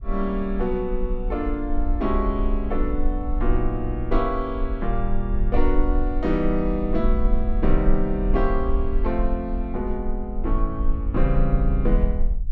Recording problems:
rumble; below 44 Hz, strongest tone 20 Hz, SNR 1 dB

